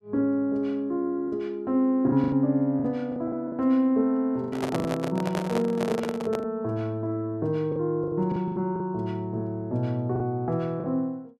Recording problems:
packet loss; 7% of the sound replaced, filled with the last packet
microphone handling noise; from 4.5 to 6.5 s; peak +1 dB vs average level

